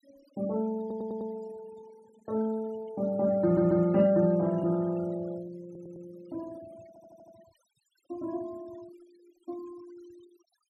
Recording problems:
denoising artefacts; signal-to-artefact ratio 24 dB
audio stuttering; 4 times, first at 1 s

